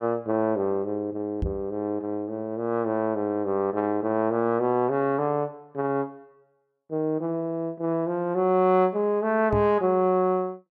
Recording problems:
knock on the microphone; at 1.5 s and at 9.5 s; peak 0 dB vs average level

